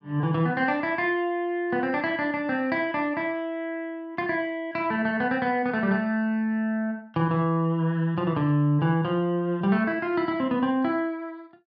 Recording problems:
none

